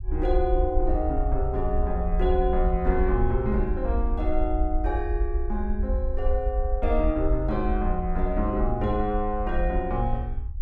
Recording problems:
low-frequency rumble; below 58 Hz, SNR 1 dB

